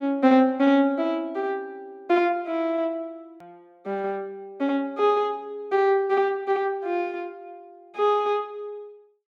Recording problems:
edit click; at 3.5 s

